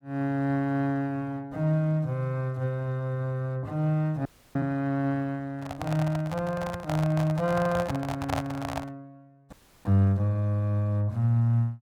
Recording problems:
audio freezing; at 4.5 s and at 9.5 s
microphone handling noise; from 5.5 to 9 s; peak +3 dB vs average level

